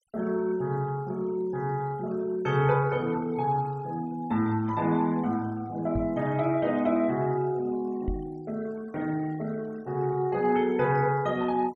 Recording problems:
denoising artefacts; signal-to-artefact ratio 24 dB
microphone bump; at 6 s and at 8 s; peak -1 dB vs average level

